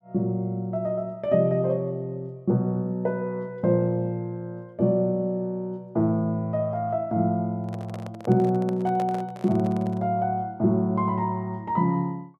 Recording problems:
microphone handling noise; from 7.5 to 10 s; peak -6 dB vs average level

